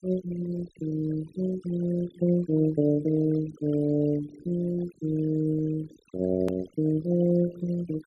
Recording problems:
denoising artefacts; signal-to-artefact ratio 18 dB
hard cut with a click; at 6.5 s

